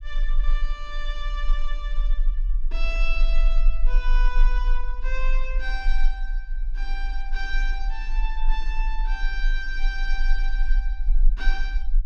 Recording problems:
rumble; below 32 Hz, strongest tone 24 Hz, SNR -7 dB

